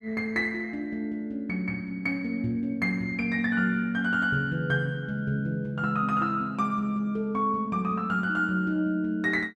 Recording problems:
none

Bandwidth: 12.5 kHz